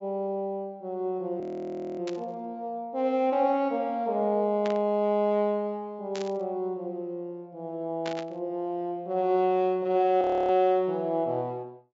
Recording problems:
low-pass filter; nothing above 8 kHz
audio freezing; at 1.5 s for 0.5 s and at 10 s
burst of static; 4 times, first at 2 s; peak -6 dB vs average level

